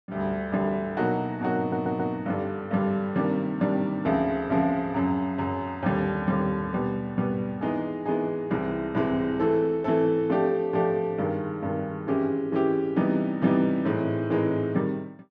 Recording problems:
stutter; at 1.5 s

